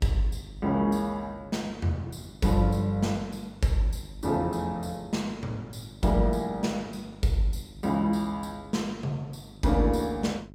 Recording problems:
hum; 50 Hz, harmonics up to 700 Hz, SNR 20 dB

